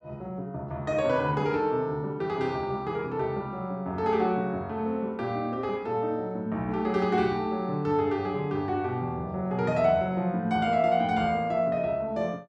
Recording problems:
none

